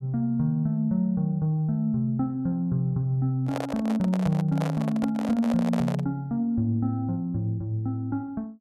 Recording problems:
microphone handling noise; from 3.5 to 6 s; peak -2 dB vs average level

